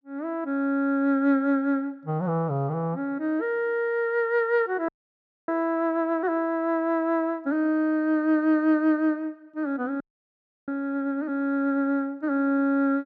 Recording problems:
frozen audio; at 5 s for 0.5 s and at 10 s for 0.5 s

